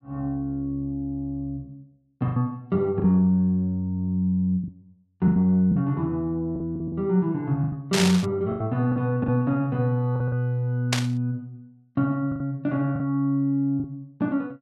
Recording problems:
lost packets; 7% of the sound replaced, filled with the last packet
burst of static; at 8 s and at 11 s; peak +5 dB vs average level

